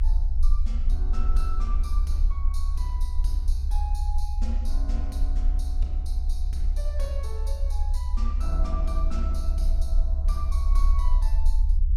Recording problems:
rumble; below 62 Hz, strongest tone 32 Hz, SNR -13 dB

